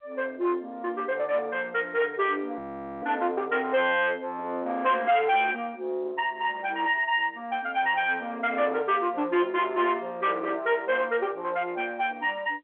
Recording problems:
phone line; 260 Hz to 3.5 kHz, G.711
distorted audio; soft clipping, signal-to-distortion ratio 11 dB
audio freezing; at 2.5 s

